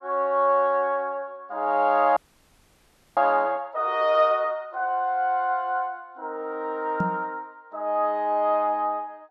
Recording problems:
audio freezing; at 2 s for 1 s
microphone bump; at 7 s; peak +1 dB vs average level

